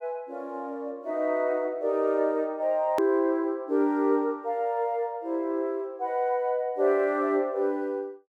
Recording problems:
edit click; at 3 s

